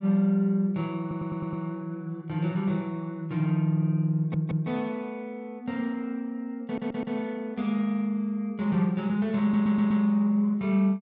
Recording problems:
audio stuttering; 4 times, first at 1 s

